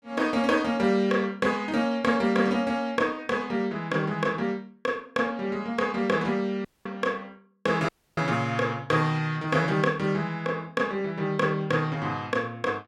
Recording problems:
audio cutting out; at 6.5 s and at 8 s

